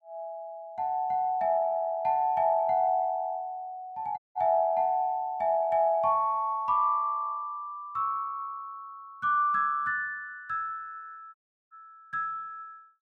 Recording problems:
audio cutting out; at 4 s and at 11 s

